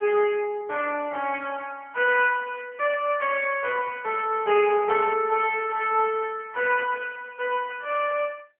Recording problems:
telephone audio; 320 Hz to 3.2 kHz, AMR-NB

